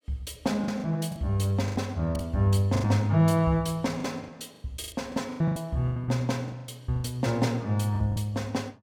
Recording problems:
lost packets; 14% of the sound replaced, filled with the last packet

